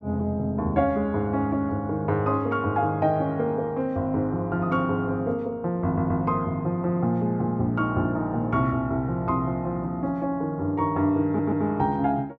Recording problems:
stutter; at 6 s and at 11 s

